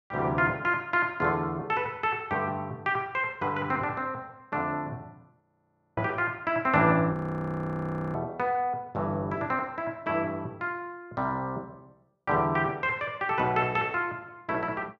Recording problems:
frozen audio; at 5.5 s for 0.5 s and at 7 s for 1 s

